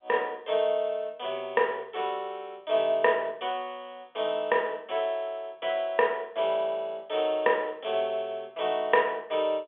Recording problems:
telephone audio; 280 Hz to 3.5 kHz, G.711

